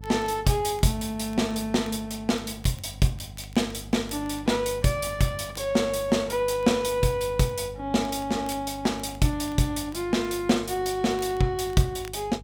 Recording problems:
mains hum; 50 Hz, harmonics up to 450 Hz, SNR 17 dB
crackling; vinyl, SNR 28 dB

